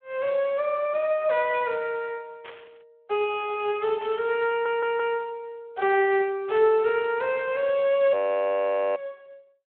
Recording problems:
telephone audio; 260 Hz to 3.6 kHz, Speex
burst of static; at 2.5 s, at 4 s and at 6.5 s; peak -13 dB vs average level
stutter; at 4.5 s
audio freezing; at 8 s for 1 s

